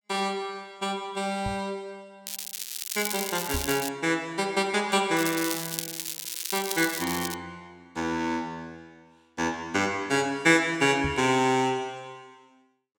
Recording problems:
microphone thump; at 1.5 s, at 3.5 s and at 11 s; peak -2 dB vs average level
crackling; from 2.5 to 4 s and from 5 to 7.5 s; loose cable, SNR 5 dB

